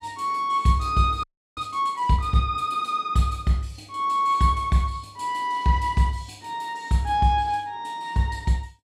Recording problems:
frozen audio; at 1 s

